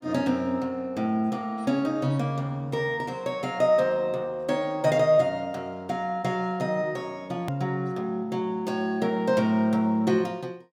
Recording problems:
click at an edit; at 7.5 s

